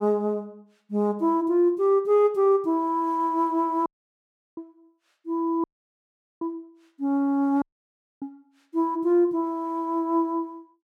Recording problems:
dropout; at 4 s for 0.5 s, at 5.5 s for 1 s and at 7.5 s for 0.5 s

